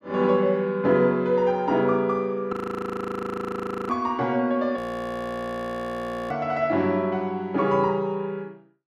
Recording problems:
frozen audio; at 2.5 s for 1.5 s and at 5 s for 1.5 s

